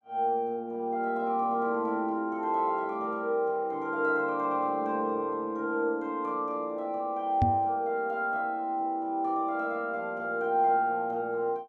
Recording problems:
microphone bump; at 7.5 s; peak +6 dB vs average level

